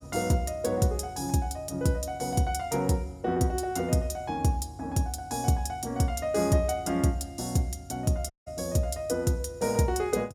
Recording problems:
audio cutting out; at 8.5 s

